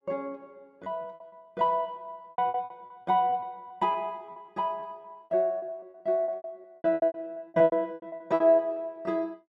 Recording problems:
lost packets; 18% of the sound replaced, filled with repeated pitch periods

